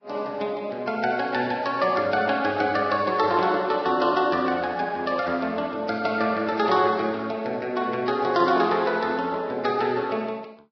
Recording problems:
codec artefacts; Vorbis, log-spectral distance 3 dB, nothing above 5.3 kHz

